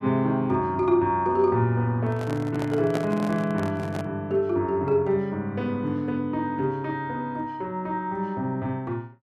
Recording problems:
handling noise; from 2 to 4 s; peak 0 dB vs average level

